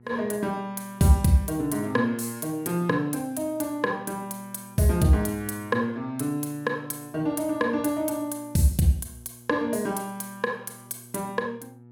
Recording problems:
electrical hum; 60 Hz, harmonics up to 960 Hz, SNR 24 dB

